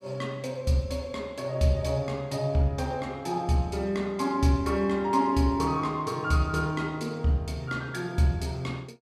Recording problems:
none

